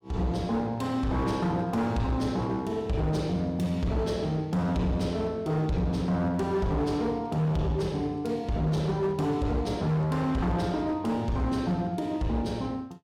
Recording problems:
distortion; hard clipping, signal-to-distortion ratio 11 dB

